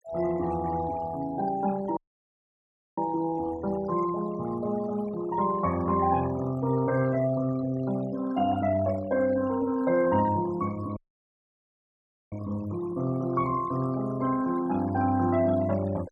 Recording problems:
noise reduction artefacts; signal-to-artefact ratio 17 dB
dropout; at 2 s for 1 s and at 11 s for 1.5 s

